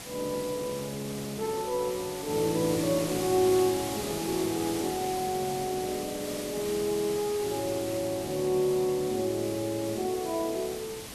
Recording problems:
hiss; slope -2 dB per octave, SNR 8 dB

